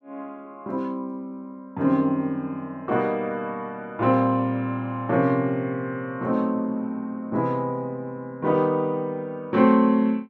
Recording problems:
none

